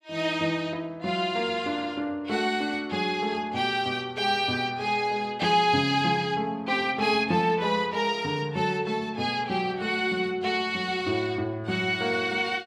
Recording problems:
none

